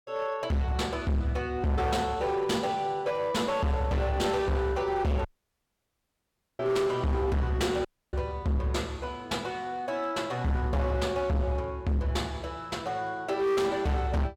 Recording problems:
distorted audio; hard clipping, uneven, signal-to-distortion ratio 6 dB
audio cutting out; at 5.5 s for 1.5 s and at 8 s

